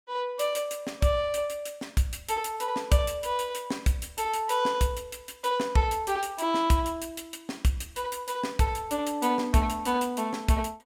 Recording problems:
none

